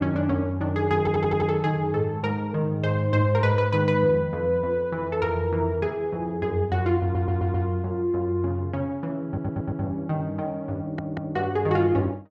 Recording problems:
audio stuttering; 4 times, first at 1 s

